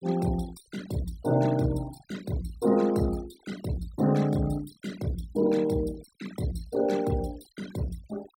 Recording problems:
noise reduction artefacts; signal-to-artefact ratio 17 dB

